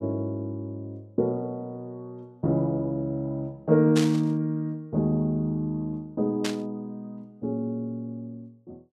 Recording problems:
static burst; at 4 s and at 6.5 s; peak +1 dB vs average level

